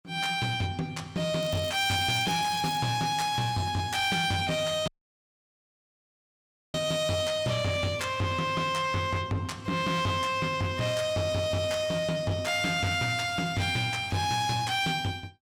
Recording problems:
distorted audio; soft clipping, signal-to-distortion ratio 11 dB
crackling; from 1.5 to 3 s; loose cable, SNR 18 dB
dropout; at 5 s for 2 s

